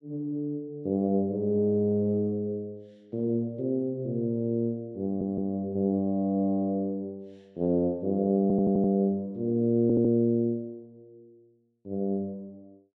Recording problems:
stutter; at 5 s, at 8.5 s and at 10 s

